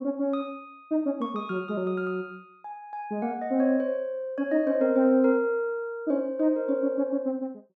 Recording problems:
none

